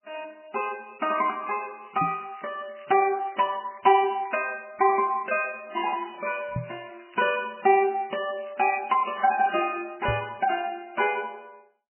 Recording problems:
lossy compression; MP3, log-spectral distance 7 dB, nothing above 2.5 kHz
crackle; from 2 to 4.5 s and from 5.5 to 8.5 s; loose cable, SNR 27 dB
knock on the microphone; at 2 s, at 6.5 s and at 10 s; peak -2 dB vs average level

